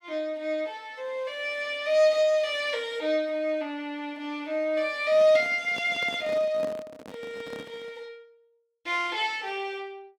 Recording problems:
microphone handling noise; from 5 to 8 s; peak -7 dB vs average level

